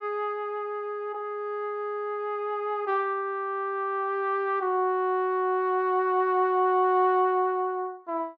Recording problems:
none

